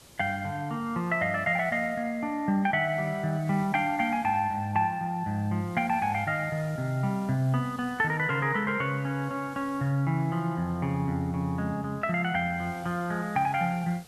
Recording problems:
hiss; SNR 25 dB

